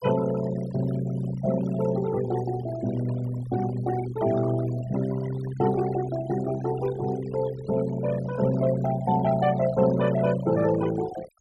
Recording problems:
noise reduction artefacts; signal-to-artefact ratio 14 dB

